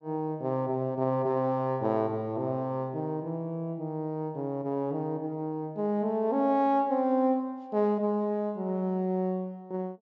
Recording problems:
treble missing; nothing above 7.8 kHz

